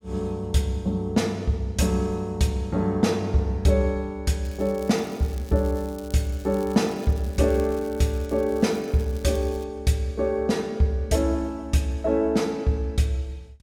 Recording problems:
crackle; from 4.5 to 9.5 s; loose cable, SNR 24 dB

